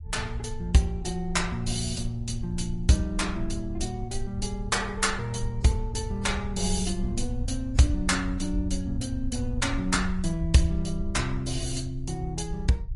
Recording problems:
lossy codec; AAC, then MP3, log-spectral distance 3 dB, nothing above 11 kHz
low-frequency rumble; below 70 Hz, SNR 8 dB

